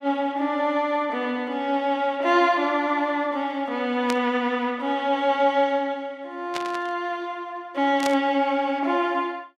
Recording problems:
static burst; at 4 s, at 6.5 s and at 8 s; peak -2 dB vs average level

